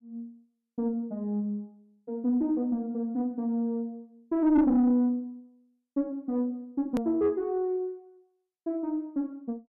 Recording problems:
distortion; soft clipping, signal-to-distortion ratio 10 dB
edit click; at 7 s

